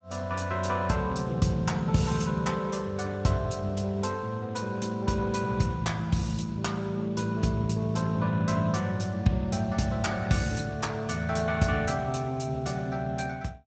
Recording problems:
codec artefacts; Speex, log-spectral distance 4 dB, nothing above 7.6 kHz

